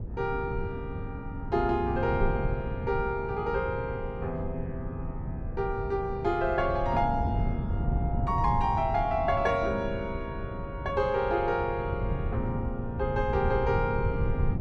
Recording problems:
wind on the microphone; below 140 Hz, SNR 4 dB

